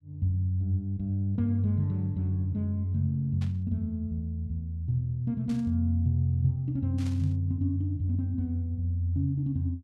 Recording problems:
static burst; at 3.5 s, at 5.5 s and at 7 s; peak -14 dB vs average level

